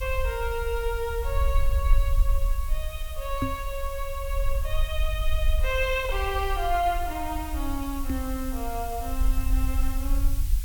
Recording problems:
hiss; slope +3 dB per octave, SNR 12 dB
rumble; below 52 Hz, SNR 0 dB
microphone bump; at 3.5 s and at 8 s; peak +7 dB vs average level

